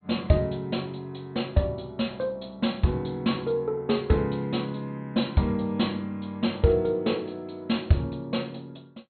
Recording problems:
treble cut off; nothing above 4.3 kHz

